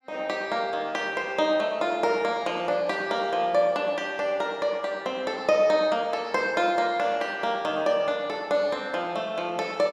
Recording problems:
none

